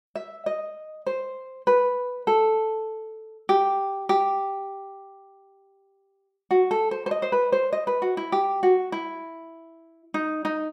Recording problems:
none

